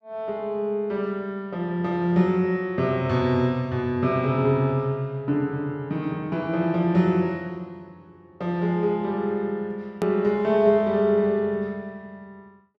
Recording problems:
hard cut with a click; at 10 s

